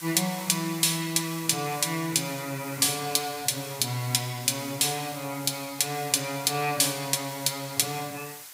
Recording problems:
background hiss; slope +3 dB per octave, SNR 14 dB

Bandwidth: 15.5 kHz